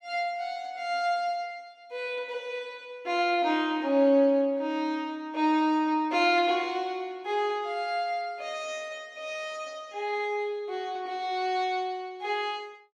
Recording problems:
none

